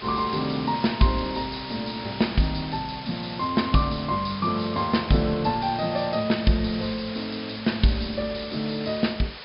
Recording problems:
treble missing; nothing above 5.5 kHz
hiss; SNR 12 dB
crackle; from 3.5 to 6 s and at 7 s; loose cable, SNR 26 dB

